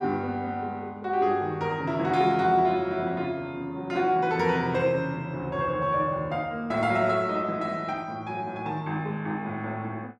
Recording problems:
none

